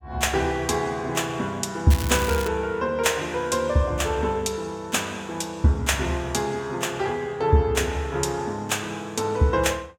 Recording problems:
crackle; at 2 s; loose cable, SNR 9 dB

